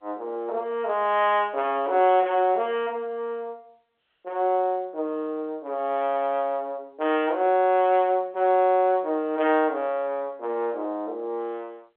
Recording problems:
phone line; 260 Hz to 3.7 kHz, G.711

